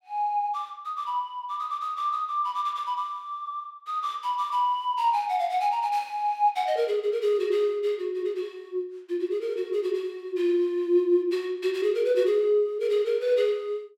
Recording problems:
none

